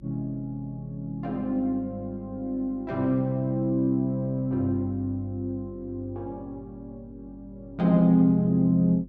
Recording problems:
hum; 50 Hz, harmonics up to 350 Hz, SNR 24 dB

